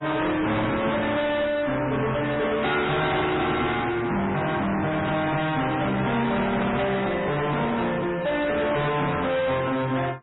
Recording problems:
codec artefacts; AAC, then MP3, log-spectral distance 5 dB, nothing above 3.9 kHz
distortion; soft clipping, signal-to-distortion ratio 6 dB

